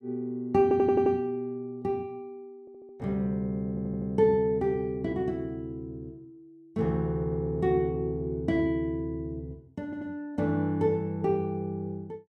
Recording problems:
audio stuttering; 4 times, first at 0.5 s

